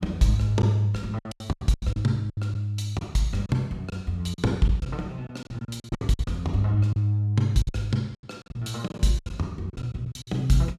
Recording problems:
packet loss; 14% of the sound replaced, filled with silence

